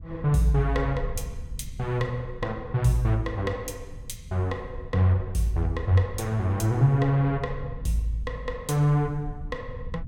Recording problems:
low-frequency rumble; below 94 Hz, SNR 15 dB

